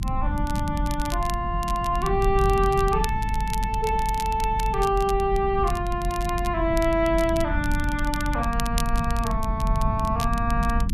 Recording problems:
low-frequency rumble; below 110 Hz, SNR 4 dB
crackle; vinyl, SNR 14 dB

